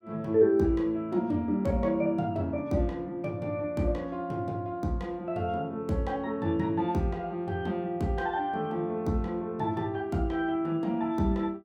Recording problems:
none

